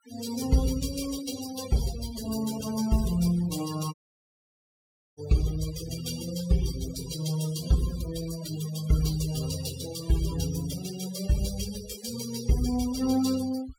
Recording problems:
denoising artefacts; signal-to-artefact ratio 10 dB
audio cutting out; at 4 s for 1 s

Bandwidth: 17 kHz